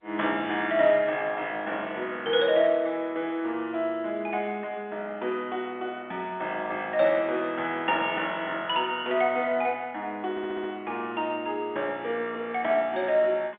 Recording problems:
phone line; 240 Hz to 3.6 kHz, G.711
stutter; at 10 s

